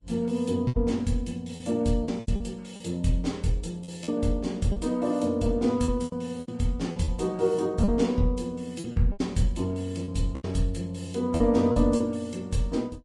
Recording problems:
lossy compression; Vorbis, log-spectral distance 2 dB, nothing above 10.7 kHz
lost packets; 9% of the sound replaced, filled with repeated pitch periods

